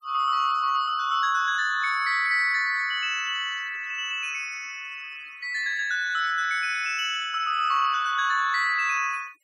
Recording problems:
denoising artefacts; signal-to-artefact ratio 22 dB

